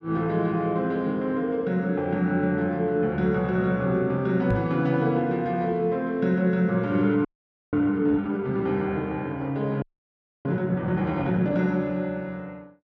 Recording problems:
knock on the microphone; at 4.5 s; peak +2 dB vs average level
audio freezing; at 7.5 s and at 10 s for 0.5 s

